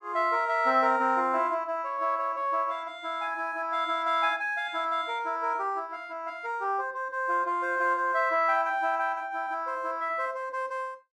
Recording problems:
none

